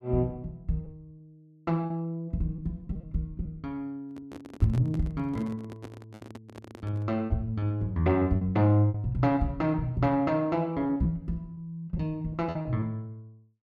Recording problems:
packet loss; 8% of the sound replaced, filled with repeated pitch periods
handling noise; from 4 to 7 s; peak -8 dB vs average level

